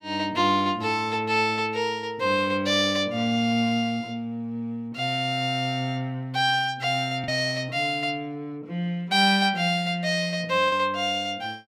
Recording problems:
lost packets; 0.7% of the sound replaced, filled with the last packet

